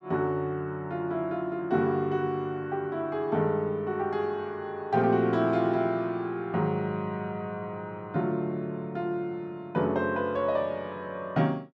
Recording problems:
none

